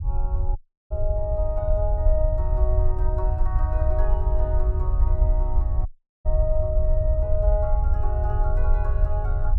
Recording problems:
low-frequency rumble; below 64 Hz, SNR -7 dB
dropout; at 0.5 s and at 6 s

